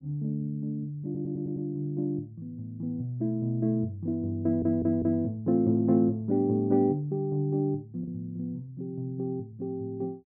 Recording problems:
lost packets; 0.4% of the sound replaced, filled with the last packet
stutter; at 1 s and at 4.5 s

